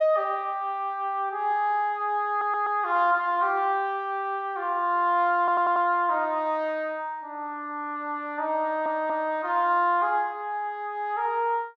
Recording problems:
stutter; at 2.5 s, at 5.5 s and at 8.5 s

